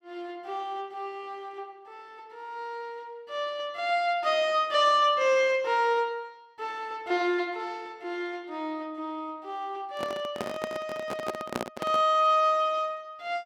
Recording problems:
microphone handling noise; from 10 to 12 s; peak +1 dB vs average level

